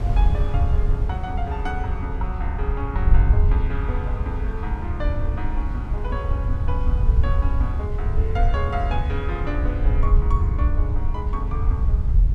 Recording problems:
rumble; below 76 Hz, SNR -8 dB
wind on the microphone; below 370 Hz, SNR 10 dB

